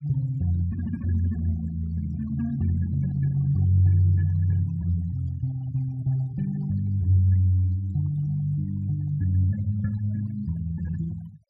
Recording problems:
noise reduction artefacts; signal-to-artefact ratio 25 dB

